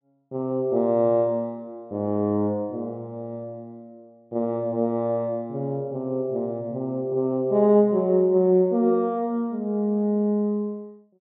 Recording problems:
treble missing; nothing above 3.9 kHz

